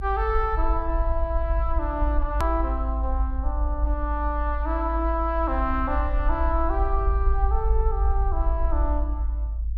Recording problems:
low-frequency rumble; below 56 Hz, strongest tone 54 Hz, SNR -1 dB
hard cut with a click; at 2.5 s

